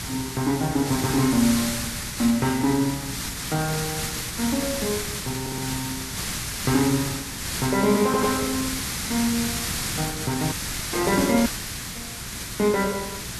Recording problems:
hum; 60 Hz, harmonics up to 660 Hz, SNR 21 dB
hiss; SNR 4 dB
audio stuttering; at 5.5 s and at 8 s
audio cutting out; at 11 s

